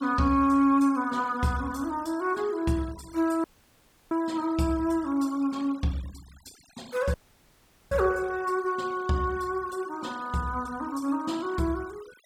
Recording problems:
denoising artefacts; signal-to-artefact ratio 22 dB
audio cutting out; at 3.5 s for 0.5 s and at 7 s for 1 s

